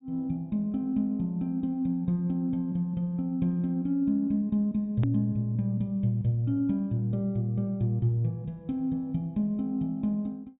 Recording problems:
treble missing; nothing above 4 kHz
hard cut with a click; at 5 s

